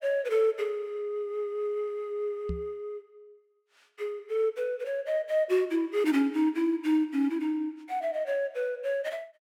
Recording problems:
microphone thump; at 2.5 s; peak -2 dB vs average level

